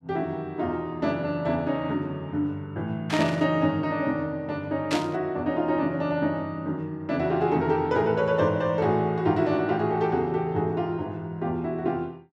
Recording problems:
burst of static; at 3 s and at 5 s; peak 0 dB vs average level

